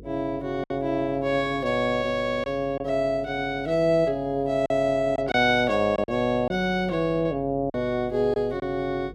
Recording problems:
electrical hum; 50 Hz, harmonics up to 500 Hz, SNR 20 dB
lost packets; 4% of the sound replaced, filled with silence

